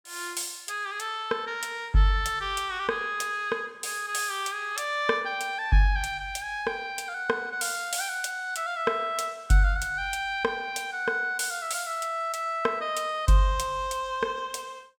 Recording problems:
none

